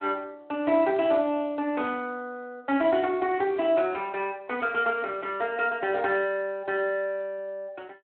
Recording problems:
phone line; 260 Hz to 3.2 kHz, Speex

